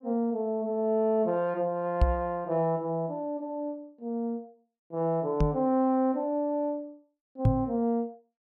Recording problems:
knock on the microphone; at 2 s, at 5.5 s and at 7.5 s; peak +9 dB vs average level

